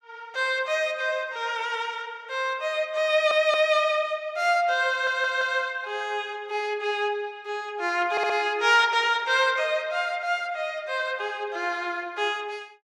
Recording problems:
stutter; at 3 s, at 5 s and at 8 s

